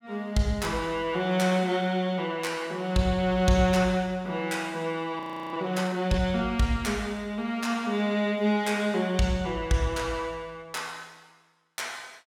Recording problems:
frozen audio; at 5 s

